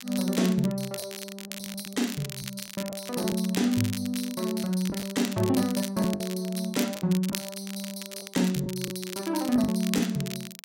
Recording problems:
crackling; vinyl, SNR 10 dB
lost packets; 6% of the sound replaced, filled with the last packet

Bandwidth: 16 kHz